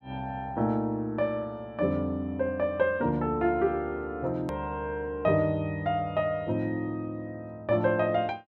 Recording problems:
hard cut with a click; at 4.5 s

